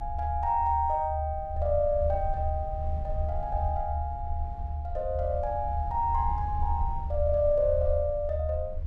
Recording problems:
rumble; below 76 Hz, SNR 4 dB

